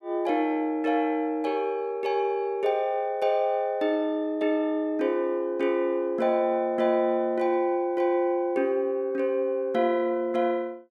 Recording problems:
none

